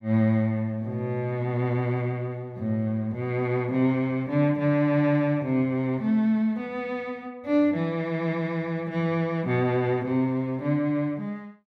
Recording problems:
none

